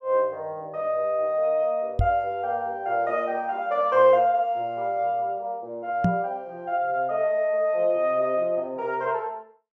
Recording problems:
microphone bump; at 2 s and at 6 s; peak +5 dB vs average level

